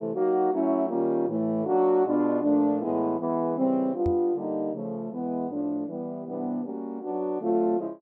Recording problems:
microphone thump; at 4 s; peak -2 dB vs average level

